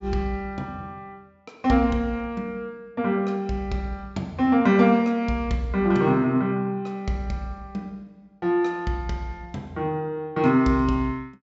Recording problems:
treble missing; nothing above 7.6 kHz

